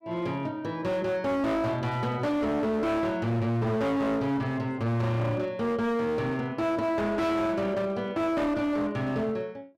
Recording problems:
distortion; hard clipping, signal-to-distortion ratio 7 dB

